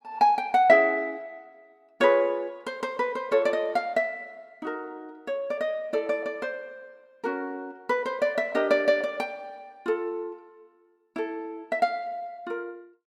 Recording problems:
none

